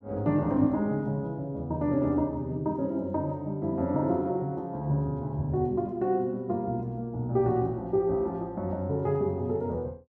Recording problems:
none

